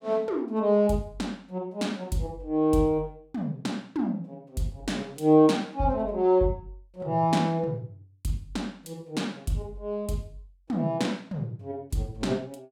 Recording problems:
none

